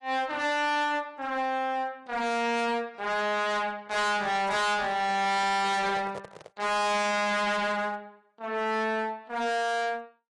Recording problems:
lossy codec; AAC, log-spectral distance 2 dB, nothing above 10.7 kHz
distortion; hard clipping, uneven, signal-to-distortion ratio 5 dB
microphone handling noise; from 5 to 6.5 s; peak -7 dB vs average level

